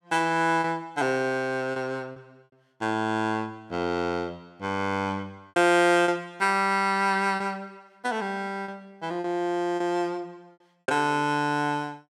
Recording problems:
lost packets; 4% of the sound replaced, filled with repeated pitch periods

